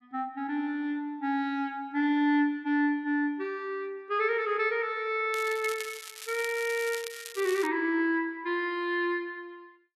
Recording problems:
crackle; from 5.5 to 7.5 s; loose cable, SNR 12 dB

